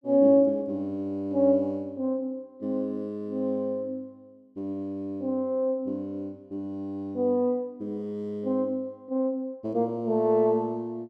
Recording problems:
none

